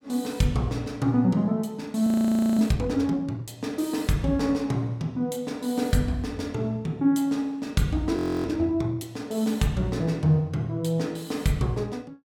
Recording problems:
frozen audio; at 2 s for 0.5 s and at 8 s

